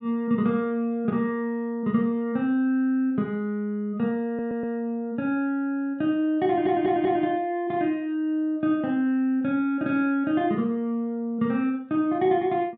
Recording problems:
audio stuttering; at 4.5 s and at 6.5 s

